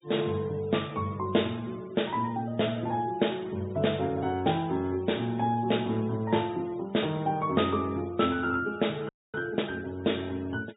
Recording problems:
treble cut off; nothing above 4 kHz
noise reduction artefacts; signal-to-artefact ratio 25 dB
audio freezing; at 9 s

